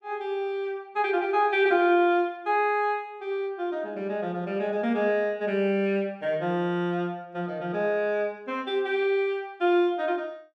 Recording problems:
none

